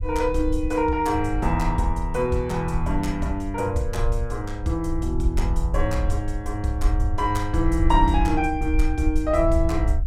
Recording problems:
low-frequency rumble; below 64 Hz, SNR 3 dB

